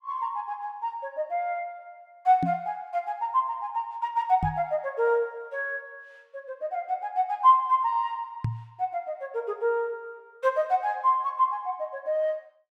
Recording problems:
microphone thump; at 2.5 s, at 4.5 s and at 8.5 s; peak +2 dB vs average level

